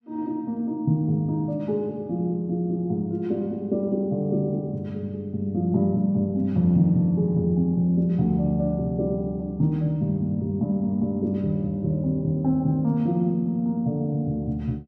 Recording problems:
none

